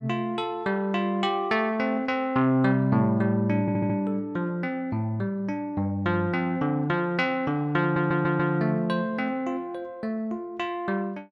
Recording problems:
audio stuttering; at 3.5 s and at 8 s

